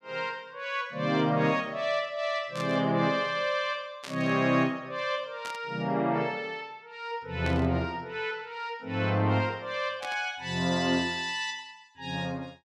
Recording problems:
static burst; 5 times, first at 2.5 s; peak -6 dB vs average level

